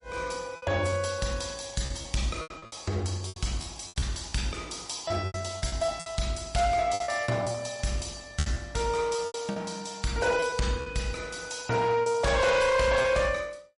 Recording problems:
codec artefacts; MP3, log-spectral distance 5 dB, nothing above 10.4 kHz
distorted audio; hard clipping, signal-to-distortion ratio 11 dB
packet loss; 10% of the sound replaced, filled with repeated pitch periods

